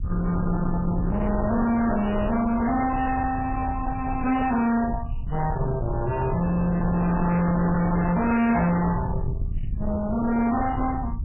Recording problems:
lossy compression; MP3, log-spectral distance 3 dB, nothing above 2.7 kHz
distortion; soft clipping, signal-to-distortion ratio 6 dB
rumble; below 210 Hz, SNR 5 dB

